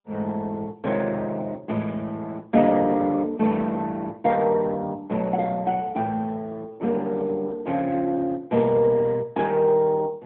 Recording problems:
phone line; 150 Hz to 3.5 kHz, AMR-NB

